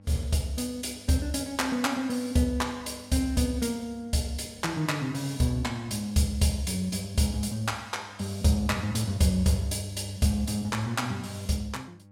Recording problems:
electrical hum; 50 Hz, harmonics up to 1.1 kHz, SNR 24 dB

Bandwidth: 16 kHz